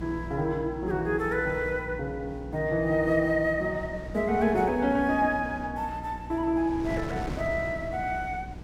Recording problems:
hum; 60 Hz, harmonics up to 360 Hz, SNR 15 dB
wind noise; below 420 Hz, SNR 15 dB

